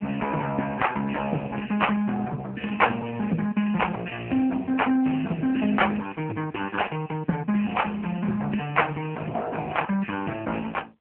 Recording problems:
telephone audio; 170 Hz to 3.1 kHz, AMR-NB

